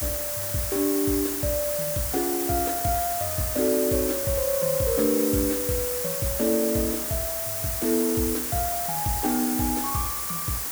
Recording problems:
hiss; slope -1 dB per octave, SNR 0 dB

